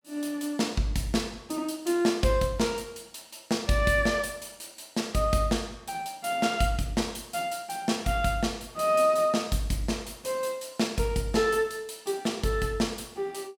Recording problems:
none

